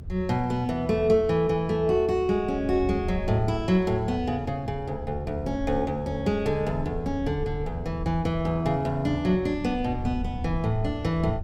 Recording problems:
rumble; below 82 Hz, SNR 11 dB

